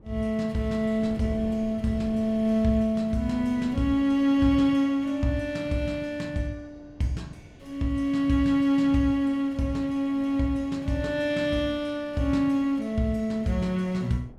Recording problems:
wind on the microphone; below 310 Hz, SNR 22 dB

